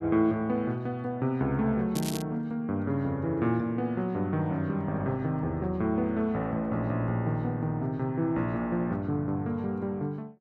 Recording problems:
crackling; at 2 s; loose cable, SNR 11 dB

